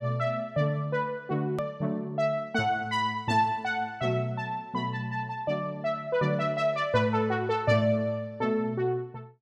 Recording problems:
click at an edit; at 1.5 s

